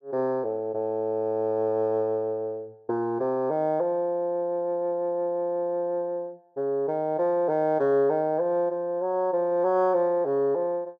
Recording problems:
none

